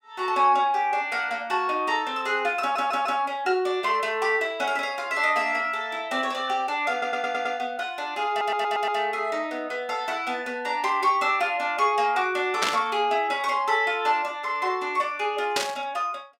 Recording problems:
audio stuttering; at 2.5 s, at 7 s and at 8.5 s
burst of static; at 13 s and at 16 s; peak +5 dB vs average level

